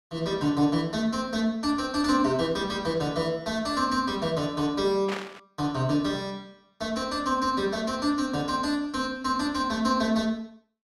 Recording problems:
static burst; at 5 s; peak -3 dB vs average level

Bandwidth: 15.5 kHz